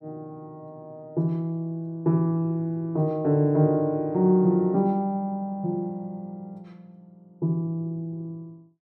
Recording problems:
none

